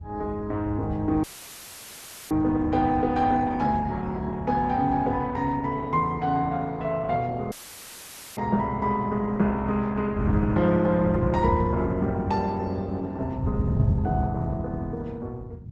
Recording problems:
lossy compression; Opus, log-spectral distance 2 dB
wind noise; below 120 Hz, SNR 4 dB
audio cutting out; at 1 s for 1 s and at 7.5 s for 1 s; filled with static

